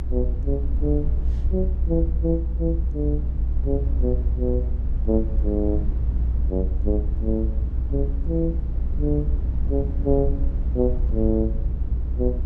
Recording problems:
low-frequency rumble; below 62 Hz, strongest tone 60 Hz, SNR -2 dB

